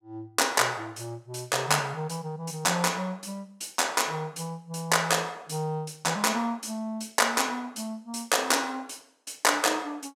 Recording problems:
none

